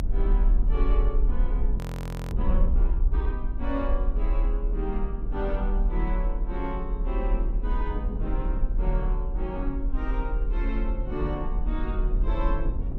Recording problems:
low-frequency rumble; below 46 Hz, strongest tone 36 Hz, SNR -6 dB
wind noise; below 220 Hz, SNR 4 dB
audio freezing; at 2 s for 0.5 s

